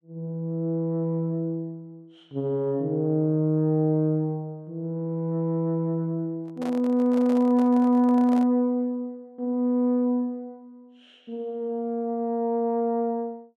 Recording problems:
microphone handling noise; from 6.5 to 8.5 s; peak -9 dB vs average level

